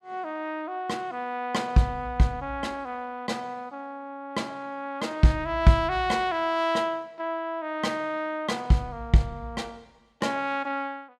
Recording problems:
none

